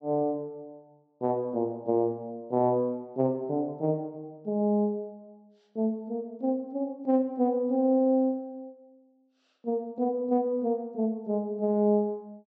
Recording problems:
low-pass filter; nothing above 8 kHz

